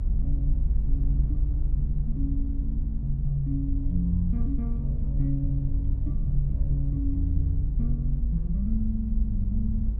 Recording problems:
low-frequency rumble; below 54 Hz, SNR -2 dB

